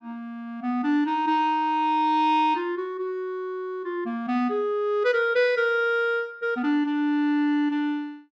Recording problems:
none

